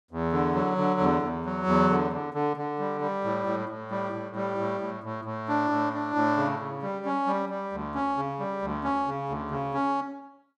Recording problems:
none

